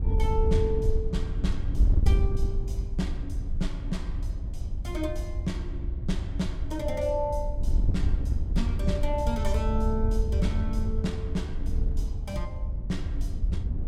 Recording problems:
wind on the microphone; below 74 Hz, SNR -3 dB

